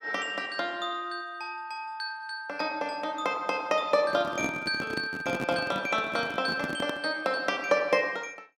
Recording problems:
handling noise; from 4 to 7 s; peak 0 dB vs average level

